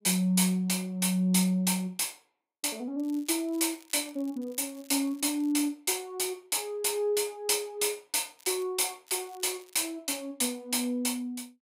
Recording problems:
crackling; from 3 to 5.5 s, at 8.5 s and at 9 s; loose cable, SNR 27 dB

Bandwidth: 15.5 kHz